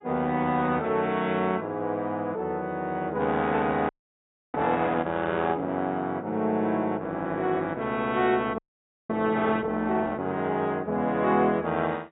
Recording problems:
lossy compression; AAC, log-spectral distance 2 dB, nothing above 3.5 kHz
frozen audio; at 4 s for 0.5 s and at 8.5 s for 0.5 s

